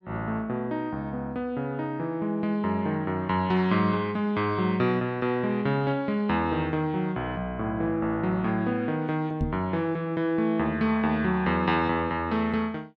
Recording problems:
microphone bump; at 9.5 s; peak +2 dB vs average level

